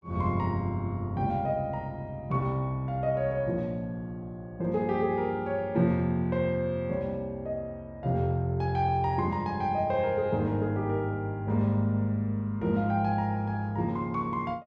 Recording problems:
none

